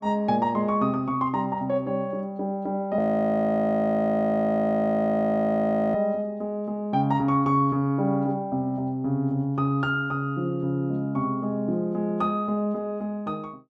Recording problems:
frozen audio; at 3 s for 3 s

